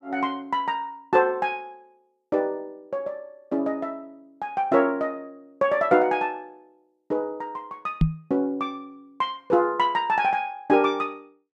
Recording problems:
knock on the microphone; at 8 s; peak +8 dB vs average level

